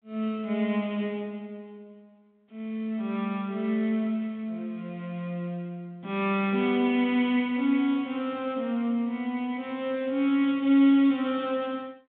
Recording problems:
telephone audio; 130 Hz to 3.7 kHz, G.726

